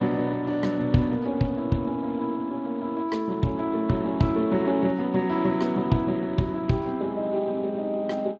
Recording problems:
lossy compression; Speex, log-spectral distance 2 dB

